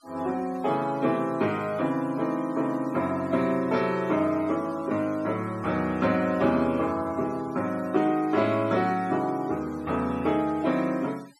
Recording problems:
noise reduction artefacts; signal-to-artefact ratio 24 dB

